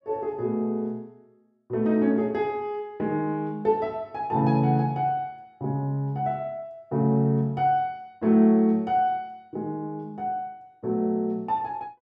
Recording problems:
none

